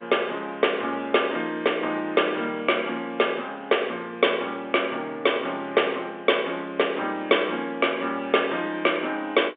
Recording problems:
phone line; 240 Hz to 3.6 kHz, G.711

